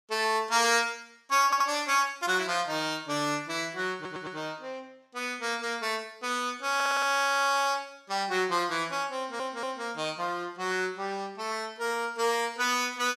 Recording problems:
stutter; 4 times, first at 1.5 s

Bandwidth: 14.5 kHz